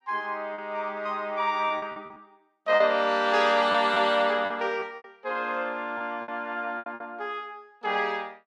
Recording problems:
lost packets; 9% of the sound replaced, filled with repeated pitch periods

